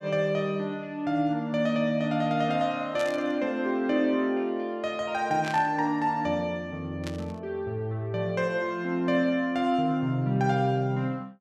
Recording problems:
static burst; at 3 s, at 5.5 s and at 7 s; peak -5 dB vs average level

